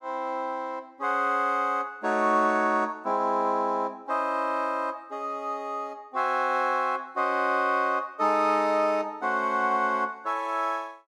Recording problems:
none

